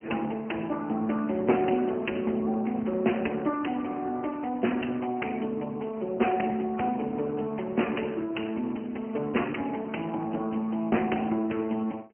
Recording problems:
telephone audio; 170 Hz to 3 kHz, Speex

